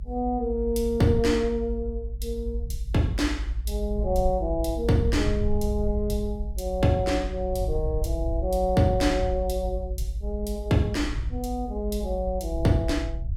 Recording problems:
rumble; below 60 Hz, SNR 5 dB

